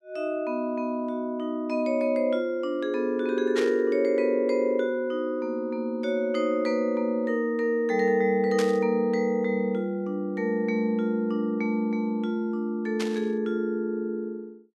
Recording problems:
static burst; at 3.5 s, at 8.5 s and at 13 s; peak -3 dB vs average level

